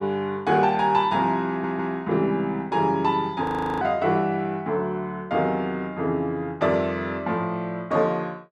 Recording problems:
audio stuttering; at 1.5 s
audio freezing; at 3.5 s

